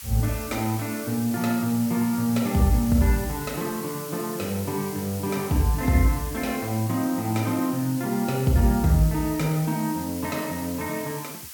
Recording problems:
background hiss; slope +3 dB per octave, SNR 12 dB

